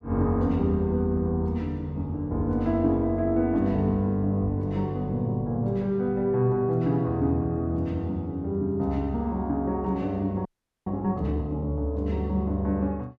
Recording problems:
audio freezing; at 10 s

